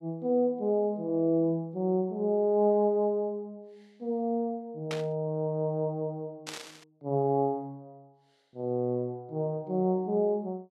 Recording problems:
burst of static; at 5 s and at 6.5 s; peak -4 dB vs average level

